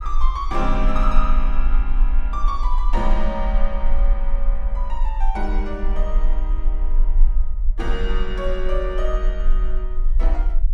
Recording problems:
low-frequency rumble; below 34 Hz, strongest tone 22 Hz, SNR -5 dB

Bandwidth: 14 kHz